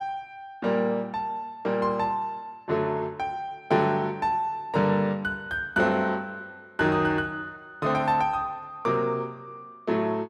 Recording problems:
none

